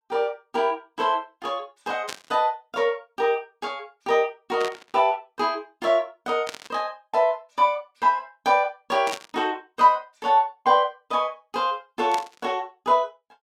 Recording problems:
static burst; 5 times, first at 2 s; peak -3 dB vs average level

